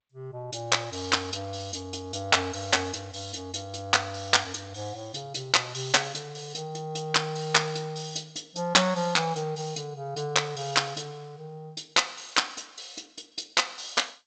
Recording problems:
lossy compression; G.722, log-spectral distance 7 dB, nothing above 7.6 kHz

